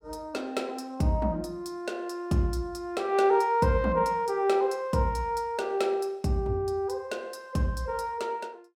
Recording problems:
none

